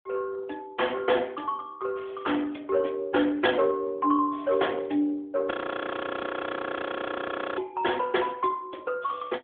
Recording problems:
telephone audio; 240 Hz to 3.6 kHz, AMR-NB
audio freezing; at 5.5 s for 2 s

